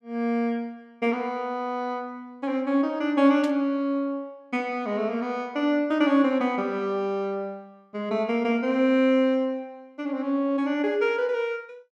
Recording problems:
static burst; at 3.5 s; peak -10 dB vs average level

